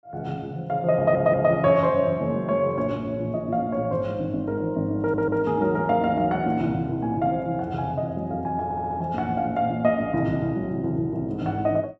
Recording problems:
audio stuttering; at 1 s, at 5 s and at 8.5 s

